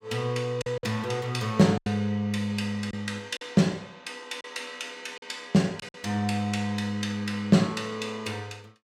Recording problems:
lost packets; 4% of the sound replaced, filled with silence

